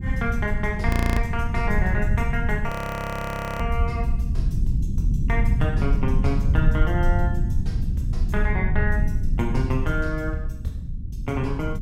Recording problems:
rumble; below 100 Hz, SNR -3 dB
audio freezing; at 1 s and at 2.5 s for 1 s

